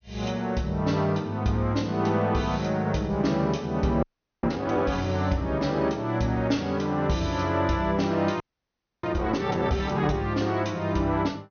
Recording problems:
treble missing; nothing above 6.3 kHz
audio freezing; at 4 s and at 8.5 s for 0.5 s

